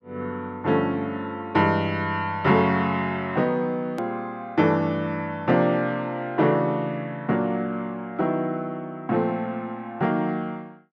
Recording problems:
click at an edit; at 4 s

